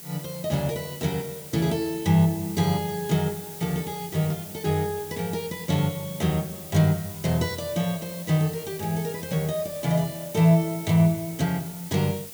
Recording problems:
hiss; SNR 13 dB

